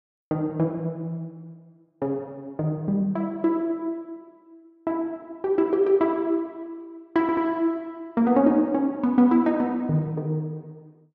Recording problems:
stutter; at 7 s

